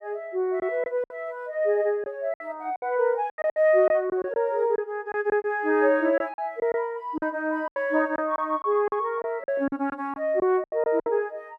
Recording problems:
packet loss; 10% of the sound replaced, filled with silence

